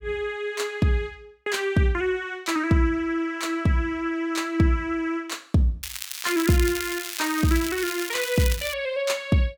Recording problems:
crackle; from 6 to 8.5 s; loose cable, SNR 7 dB

